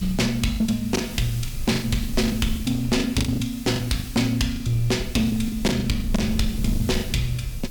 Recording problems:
distorted audio; hard clipping, signal-to-distortion ratio 10 dB
hiss; slope +2 dB per octave, SNR 16 dB
rumble; below 84 Hz, SNR 10 dB
packet loss; 12% of the sound replaced, filled with the last packet

